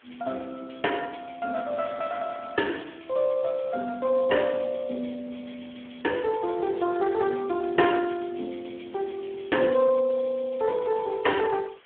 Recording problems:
telephone audio; 220 Hz to 2.8 kHz, Speex
hiss; SNR 27 dB

